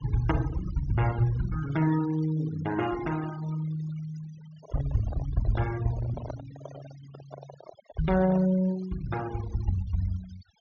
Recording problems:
treble cut off; nothing above 6.7 kHz
denoising artefacts; signal-to-artefact ratio 17 dB
microphone handling noise; from 4.5 to 8.5 s; peak -7 dB vs average level

